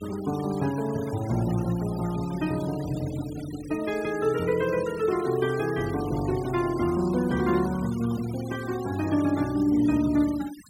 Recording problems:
noise reduction artefacts; signal-to-artefact ratio 18 dB

